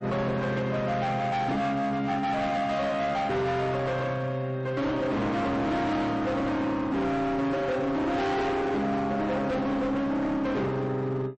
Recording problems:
lossy codec; MP3, log-spectral distance 2 dB, nothing above 8.2 kHz
distortion; hard clipping, signal-to-distortion ratio 7 dB

